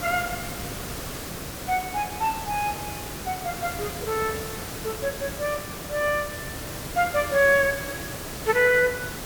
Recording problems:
background hiss; slope -4 dB per octave, SNR 8 dB

